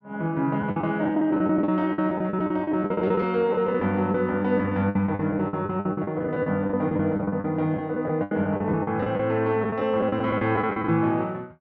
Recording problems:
lost packets; 16% of the sound replaced, filled with the last packet

